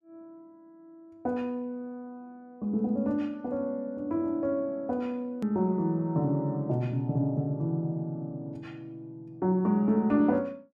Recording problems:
click at an edit; at 5.5 s

